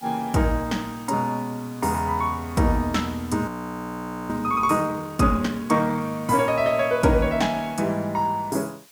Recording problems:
hiss; slope +1 dB per octave, SNR 23 dB
frozen audio; at 3.5 s for 1 s

